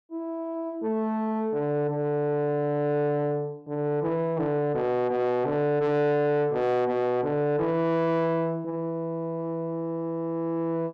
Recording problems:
distorted audio; soft clipping, signal-to-distortion ratio 11 dB

